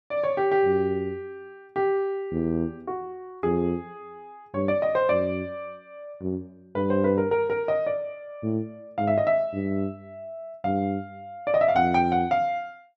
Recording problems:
none

